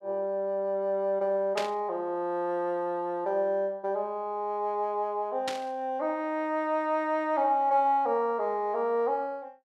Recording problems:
static burst; at 1.5 s and at 5.5 s; peak 0 dB vs average level

